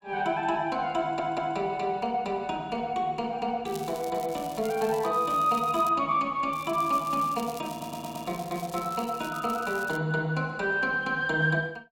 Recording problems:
stutter; at 1 s and at 7.5 s
crackle; from 3.5 to 6 s and from 6.5 to 10 s; loose cable, SNR 18 dB

